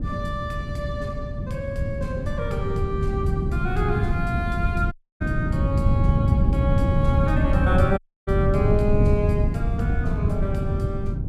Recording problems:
wind on the microphone; below 160 Hz, SNR -4 dB
audio cutting out; at 5 s and at 8 s

